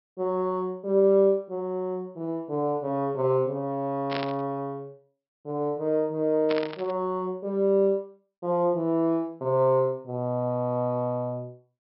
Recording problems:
low-pass filter; nothing above 5.5 kHz
burst of static; at 4 s and at 6.5 s; peak -2 dB vs average level

